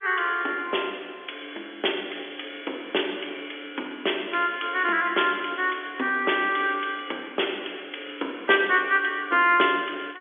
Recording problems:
phone line; 240 Hz to 3.5 kHz, G.711

